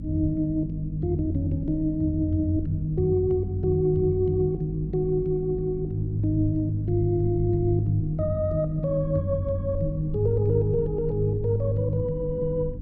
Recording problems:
hum; 50 Hz, harmonics up to 300 Hz, SNR 11 dB
low-frequency rumble; below 76 Hz, SNR 16 dB

